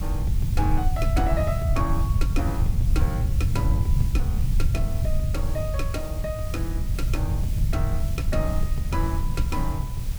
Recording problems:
background hiss; slope -1 dB per octave, SNR 12 dB
low-frequency rumble; below 100 Hz, SNR -6 dB
wind noise; below 610 Hz, SNR 20 dB

